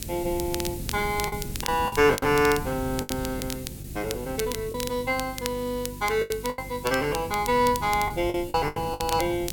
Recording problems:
electrical hum; 50 Hz, harmonics up to 350 Hz, SNR 16 dB
background hiss; slope +3 dB per octave, SNR 16 dB
wind on the microphone; below 200 Hz, SNR 13 dB
crackling; vinyl, SNR 11 dB
packet loss; 8% of the sound replaced, filled with the last packet

